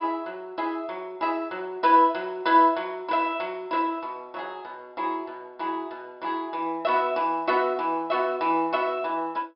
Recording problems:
treble cut off; nothing above 5.5 kHz

